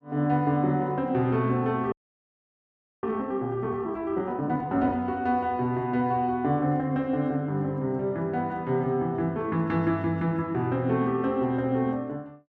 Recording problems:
frozen audio; at 2 s for 1 s

